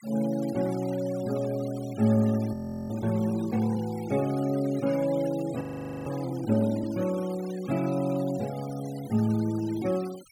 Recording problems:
denoising artefacts; signal-to-artefact ratio 19 dB
frozen audio; at 2.5 s and at 5.5 s

